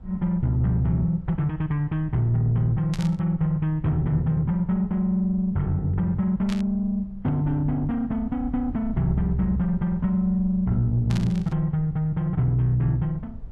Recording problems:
low-frequency rumble; below 82 Hz, SNR 18 dB
burst of static; at 3 s, at 6.5 s and at 11 s; peak -8 dB vs average level

